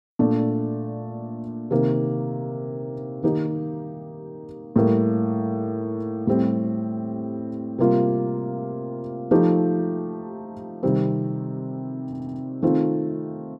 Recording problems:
stutter; at 12 s

